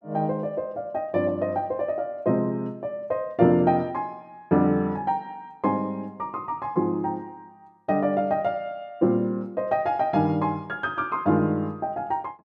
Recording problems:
none

